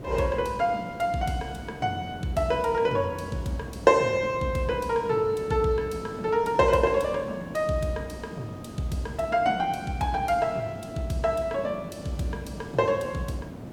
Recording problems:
hiss; slope -9 dB per octave, SNR 14 dB

